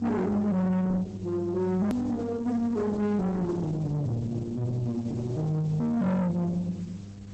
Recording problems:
codec artefacts; Opus, log-spectral distance 2 dB, nothing above 13.1 kHz
distorted audio; soft clipping, signal-to-distortion ratio 7 dB
electrical hum; 50 Hz, harmonics up to 500 Hz, SNR 12 dB
background hiss; slope 0 dB per octave, SNR 28 dB
click at an edit; at 2 s

